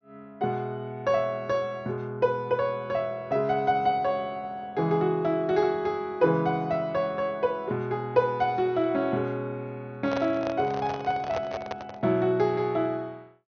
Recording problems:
treble cut off; nothing above 6.4 kHz
microphone handling noise; from 10 to 12 s; peak -2 dB vs average level

